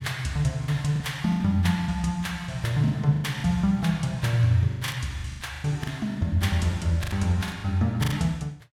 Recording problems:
packet loss; 12% of the sound replaced, filled with the last packet

